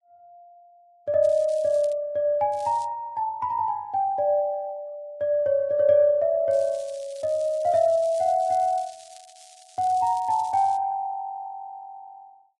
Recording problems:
lossy codec; Vorbis, log-spectral distance 2 dB
crackle; at 1 s, at 2.5 s and from 6.5 to 11 s; loose cable, SNR 24 dB

